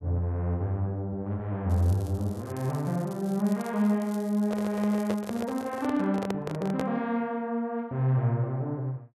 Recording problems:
crackling; from 1.5 to 6 s; loose cable, SNR 22 dB
microphone handling noise; from 4.5 to 7 s; peak 0 dB vs average level

